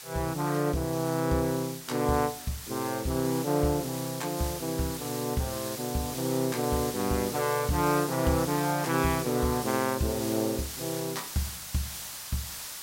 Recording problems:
background hiss; slope +2 dB per octave, SNR 8 dB

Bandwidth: 16 kHz